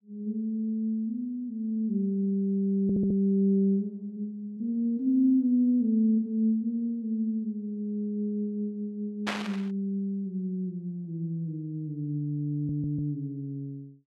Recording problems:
audio stuttering; at 3 s and at 13 s
static burst; at 9.5 s; peak +2 dB vs average level

